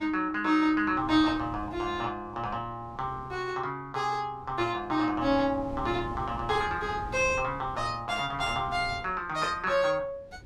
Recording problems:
wind noise; below 290 Hz, SNR 16 dB

